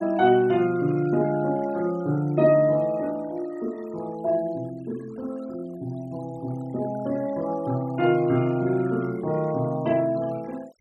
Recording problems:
denoising artefacts; signal-to-artefact ratio 23 dB

